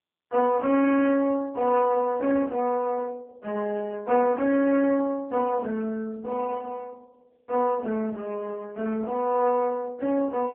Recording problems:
telephone audio; 300 Hz to 2.7 kHz, AMR-NB
distortion; hard clipping, signal-to-distortion ratio 15 dB

